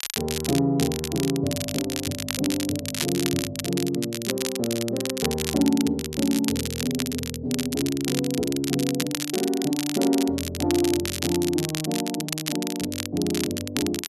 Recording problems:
crackling; vinyl, SNR 5 dB

